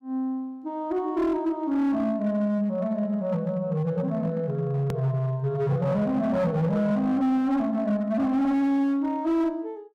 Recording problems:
distortion; hard clipping, signal-to-distortion ratio 12 dB
edit click; at 5 s

